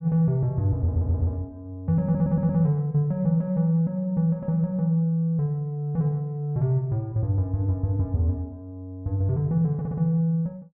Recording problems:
stutter; at 1 s, at 2 s and at 10 s

